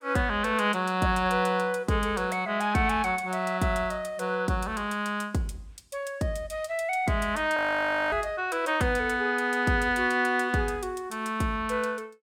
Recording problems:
frozen audio; at 7.5 s for 0.5 s

